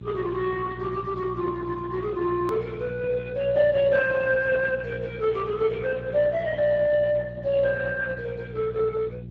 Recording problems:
lossy compression; Speex, log-spectral distance 4 dB
mains hum; 60 Hz, harmonics up to 540 Hz, SNR 12 dB
click at an edit; at 2.5 s

